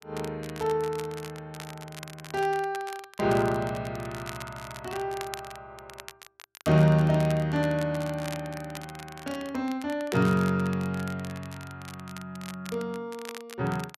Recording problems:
crackling; vinyl, SNR 16 dB

